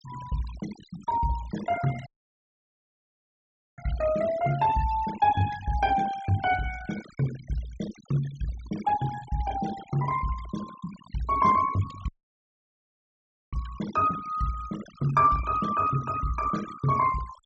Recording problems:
treble missing; nothing above 8 kHz
denoising artefacts; signal-to-artefact ratio 17 dB
audio cutting out; at 2 s for 1.5 s and at 12 s for 1.5 s

